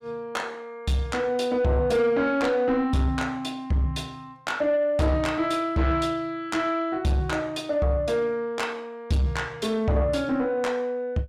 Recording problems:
distortion; soft clipping, signal-to-distortion ratio 11 dB

